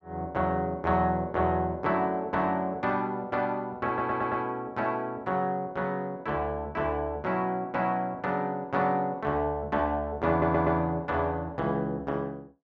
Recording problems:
audio stuttering; at 4 s and at 10 s

